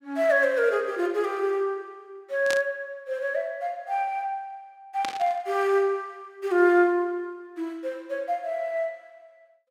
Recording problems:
static burst; at 2.5 s and at 5 s; peak -2 dB vs average level

